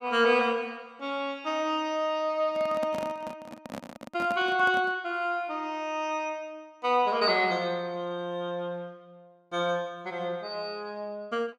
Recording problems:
handling noise; from 2.5 to 5 s; peak -4 dB vs average level

